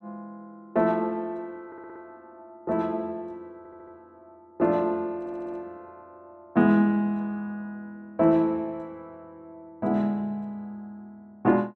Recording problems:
audio stuttering; at 1.5 s, at 3.5 s and at 5 s

